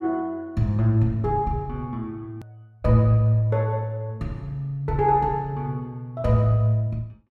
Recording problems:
hard cut with a click; at 2.5 s

